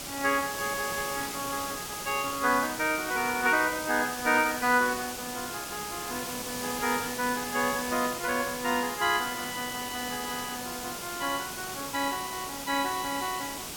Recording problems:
hiss; SNR 6 dB

